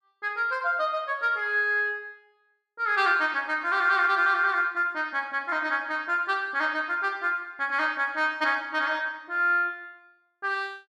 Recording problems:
none

